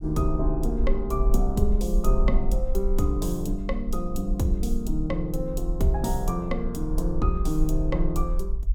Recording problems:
low-frequency rumble; below 44 Hz, SNR 2 dB

